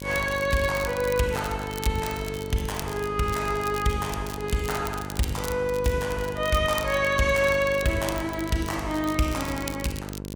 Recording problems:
hum; 50 Hz, harmonics up to 1.1 kHz, SNR 10 dB
crackle; vinyl, SNR 14 dB

